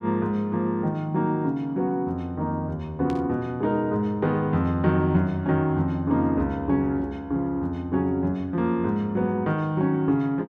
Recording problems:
static burst; at 3 s; peak -13 dB vs average level

